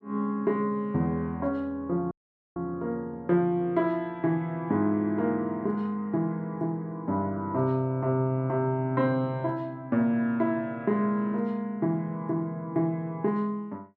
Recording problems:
dropout; at 2 s

